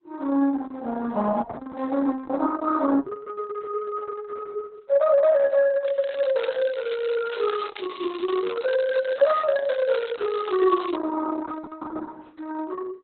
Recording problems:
lossy compression; Opus, log-spectral distance 5 dB, nothing above 4 kHz
crackle; from 6 to 11 s; loose cable, SNR 18 dB

